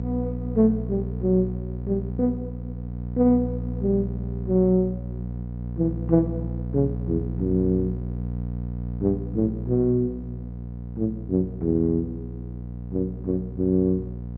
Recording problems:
electrical hum; 60 Hz, harmonics up to 540 Hz, SNR 7 dB

